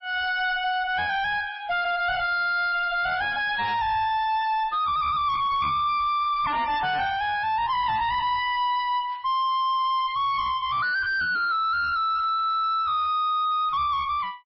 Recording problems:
codec artefacts; MP3, log-spectral distance 2 dB, nothing above 4.9 kHz
distorted audio; soft clipping, signal-to-distortion ratio 6 dB

